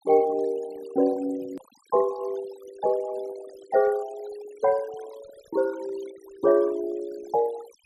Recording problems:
denoising artefacts; signal-to-artefact ratio 20 dB
edit click; at 1.5 s

